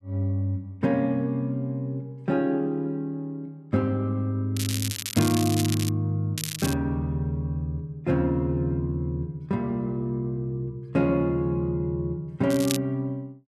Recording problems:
crackle; from 4.5 to 6 s, at 6.5 s and at 13 s; loose cable, SNR 6 dB

